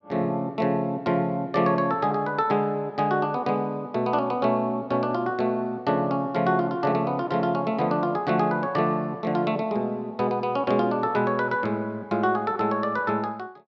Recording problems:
none

